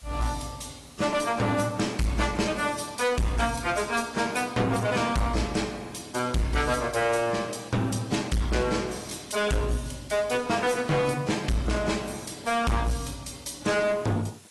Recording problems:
codec artefacts; AAC, log-spectral distance 7 dB, nothing above 11.6 kHz
distorted audio; hard clipping, uneven, signal-to-distortion ratio 7 dB
background hiss; slope 0 dB per octave, SNR 24 dB

